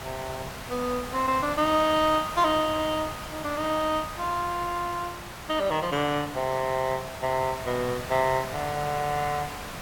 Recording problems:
hiss; SNR 10 dB

